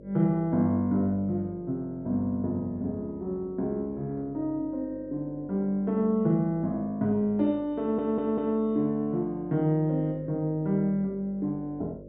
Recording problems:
hum; 50 Hz, harmonics up to 600 Hz, SNR 20 dB
stutter; at 8 s

